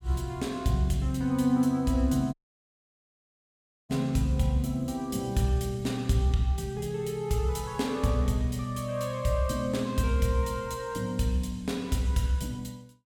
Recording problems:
audio cutting out; at 2.5 s for 1.5 s

